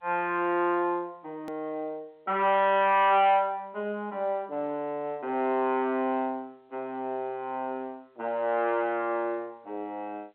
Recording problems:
telephone audio; 220 Hz to 3.3 kHz, G.711
distortion; soft clipping, signal-to-distortion ratio 7 dB
hard cut with a click; at 1.5 s

